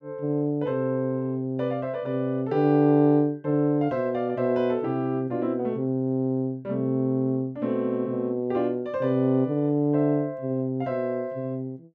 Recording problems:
none

